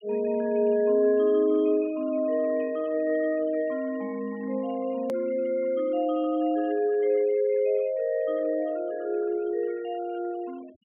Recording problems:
low-pass filter; nothing above 3.2 kHz
denoising artefacts; signal-to-artefact ratio 27 dB
click at an edit; at 5 s

